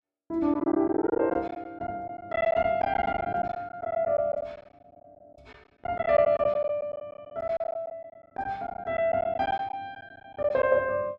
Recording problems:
lost packets; 13% of the sound replaced, filled with silence

